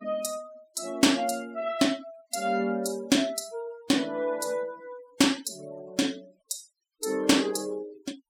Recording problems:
noise reduction artefacts; signal-to-artefact ratio 21 dB

